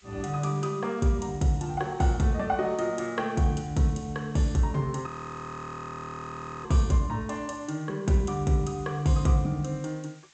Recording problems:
treble missing; nothing above 8 kHz
background hiss; SNR 29 dB
frozen audio; at 5 s for 1.5 s

